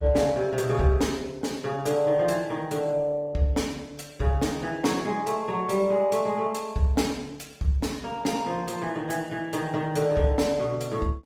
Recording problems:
codec artefacts; Opus, log-spectral distance 3 dB

